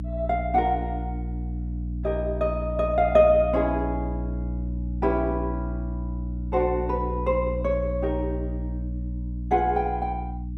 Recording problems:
hum; 60 Hz, harmonics up to 300 Hz, SNR 6 dB

